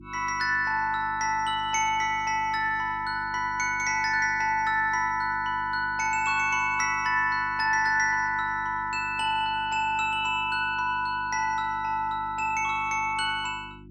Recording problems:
mains hum; 50 Hz, harmonics up to 350 Hz, SNR 21 dB

